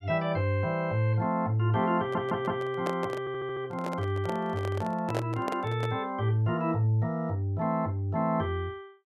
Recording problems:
audio stuttering; at 2 s and at 3 s
handling noise; from 2 to 6 s; peak +1 dB vs average level

